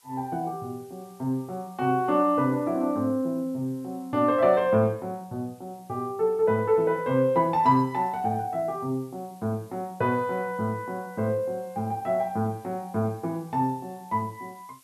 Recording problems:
background hiss; slope +1 dB per octave, SNR 30 dB

